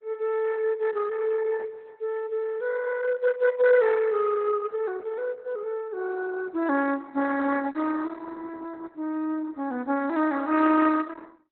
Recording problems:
codec artefacts; Opus, log-spectral distance 3 dB, nothing above 4 kHz

